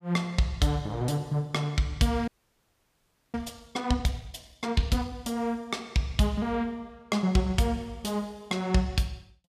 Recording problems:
audio freezing; at 2.5 s for 1 s

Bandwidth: 15 kHz